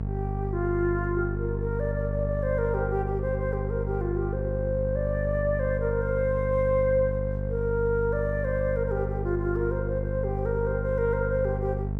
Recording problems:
hum; 50 Hz, harmonics up to 650 Hz, SNR 2 dB

